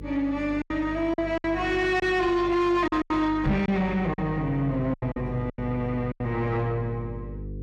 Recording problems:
distortion; soft clipping, signal-to-distortion ratio 10 dB
electrical hum; 50 Hz, harmonics up to 500 Hz, SNR 12 dB
lost packets; 9% of the sound replaced, filled with silence
knock on the microphone; at 3.5 s; peak +4 dB vs average level

